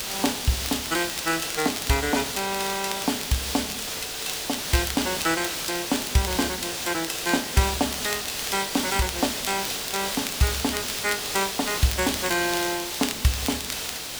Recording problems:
background hiss; slope 0 dB per octave, SNR 2 dB
crackle; vinyl, SNR 11 dB

